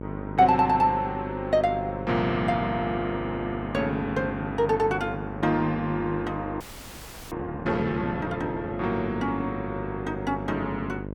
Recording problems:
hum; 50 Hz, harmonics up to 1.1 kHz, SNR 9 dB
frozen audio; at 6.5 s for 0.5 s

